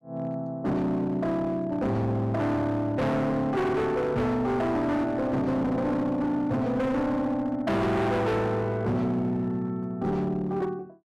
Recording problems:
distortion; hard clipping, uneven, signal-to-distortion ratio 7 dB

